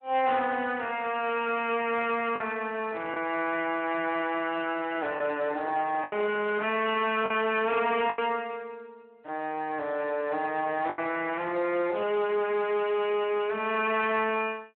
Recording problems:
telephone audio; 260 Hz to 3.2 kHz, Speex
distortion; hard clipping, signal-to-distortion ratio 12 dB
lost packets; 3% of the sound replaced, filled with the last packet
microphone handling noise; from 5 to 8.5 s; peak -11 dB vs average level
crackle; from 6.5 to 8.5 s; loose cable, SNR 29 dB

